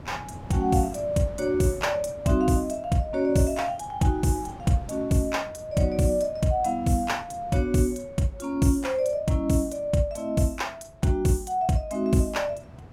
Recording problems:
wind noise; below 380 Hz, SNR 20 dB

